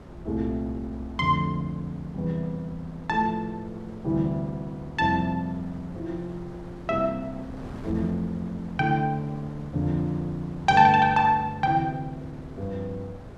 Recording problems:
wind noise; below 510 Hz, SNR 17 dB

